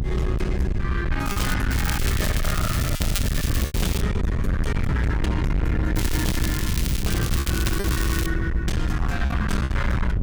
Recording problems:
distortion; hard clipping, uneven, signal-to-distortion ratio 6 dB
rumble; below 140 Hz, SNR -3 dB
wind noise; below 350 Hz, SNR 18 dB
lost packets; 4% of the sound replaced, filled with repeated pitch periods
crackle; from 1.5 to 4 s and from 6 to 8.5 s; loose cable, SNR 3 dB

